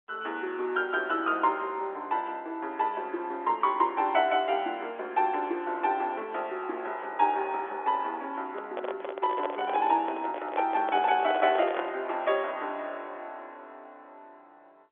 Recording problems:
telephone audio; 260 Hz to 3.5 kHz, G.711
microphone handling noise; from 8.5 to 12 s; peak +1 dB vs average level

